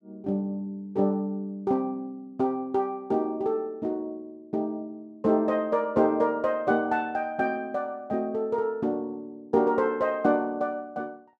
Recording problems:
none

